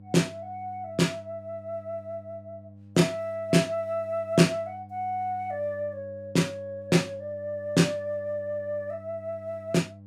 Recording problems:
electrical hum; 50 Hz, harmonics up to 600 Hz, SNR 19 dB

